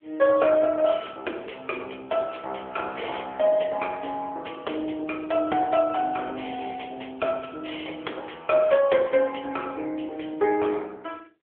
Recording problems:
telephone audio; 280 Hz to 3.4 kHz, AMR-NB

